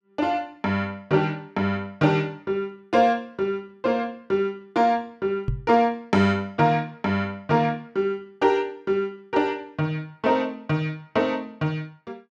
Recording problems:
microphone bump; at 5.5 s; peak +2 dB vs average level

